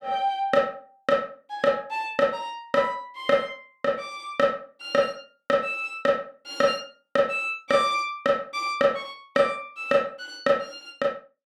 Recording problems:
none

